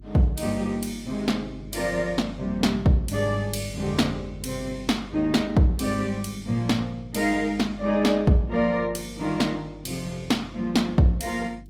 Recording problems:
lossy codec; Opus, log-spectral distance 3 dB
hum; 50 Hz, harmonics up to 350 Hz, SNR 18 dB

